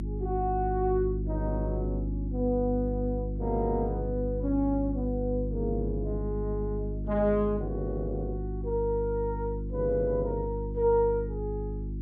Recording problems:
hum; 50 Hz, harmonics up to 350 Hz, SNR 3 dB

